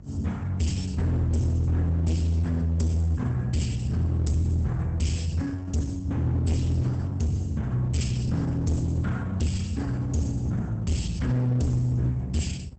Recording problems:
lossy compression; Opus, log-spectral distance 3 dB, nothing above 8.2 kHz
distorted audio; hard clipping, uneven, signal-to-distortion ratio 7 dB
hum; 50 Hz, harmonics up to 550 Hz, SNR 25 dB

